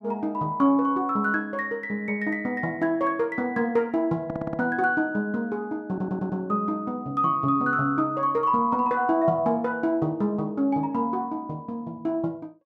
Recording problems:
stutter; at 4.5 s and at 6 s

